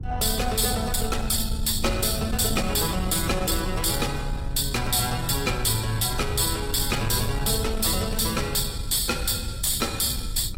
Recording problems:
lossy codec; AAC, log-spectral distance 6 dB, nothing above 15.5 kHz
distortion; soft clipping, signal-to-distortion ratio 12 dB
low-frequency rumble; below 110 Hz, SNR 8 dB

